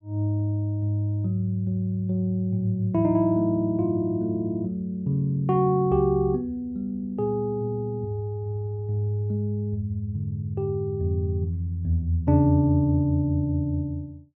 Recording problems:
none

